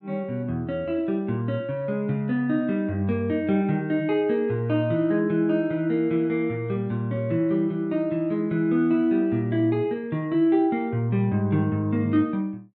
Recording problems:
none

